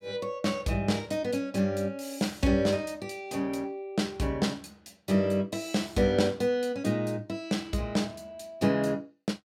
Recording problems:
none

